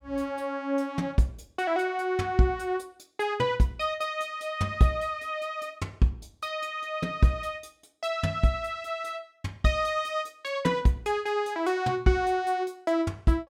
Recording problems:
none

